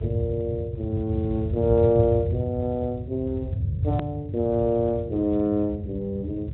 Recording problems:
low-pass filter; nothing above 3.9 kHz
codec artefacts; Speex, log-spectral distance 2 dB
hum; 50 Hz, harmonics up to 550 Hz, SNR 26 dB
low-frequency rumble; below 120 Hz, SNR 4 dB
hard cut with a click; at 4 s

